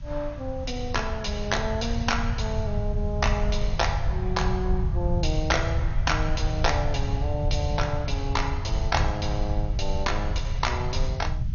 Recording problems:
lossy codec; MP2, log-spectral distance 2 dB, nothing above 6.7 kHz
background hiss; slope 0 dB per octave, SNR 27 dB
low-frequency rumble; below 98 Hz, SNR 0 dB

